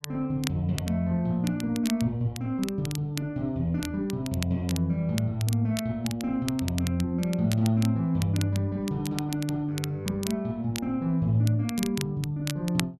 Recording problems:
crackling; vinyl, SNR 12 dB

